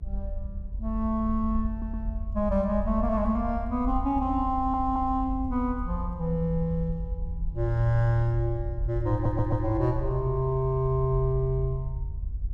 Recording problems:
rumble; below 76 Hz, strongest tone 44 Hz, SNR 7 dB
stutter; at 1.5 s, at 4.5 s and at 9 s

